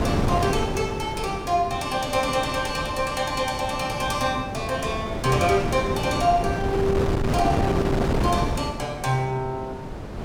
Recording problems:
wind noise; below 520 Hz, SNR 3 dB

